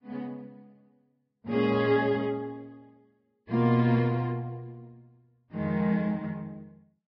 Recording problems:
lossy codec; Vorbis, log-spectral distance 2 dB, nothing above 5 kHz

